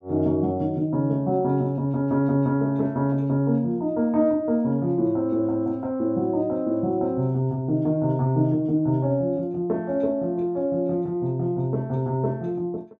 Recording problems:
none

